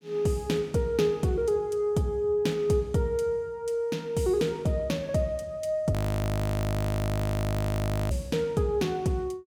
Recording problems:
frozen audio; at 6 s for 2 s

